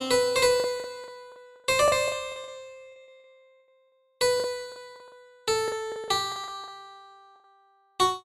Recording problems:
packet loss; 14% of the sound replaced, filled with the last packet

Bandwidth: 14 kHz